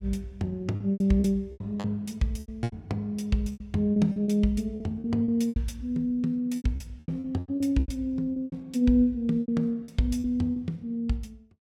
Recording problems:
packet loss; 14% of the sound replaced, filled with repeated pitch periods

